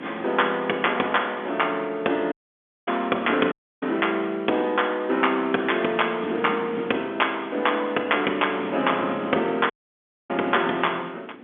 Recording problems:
phone line; 220 Hz to 3.5 kHz, G.711
wind noise; below 750 Hz, SNR 13 dB
dropout; at 2.5 s for 0.5 s, at 3.5 s and at 9.5 s for 0.5 s

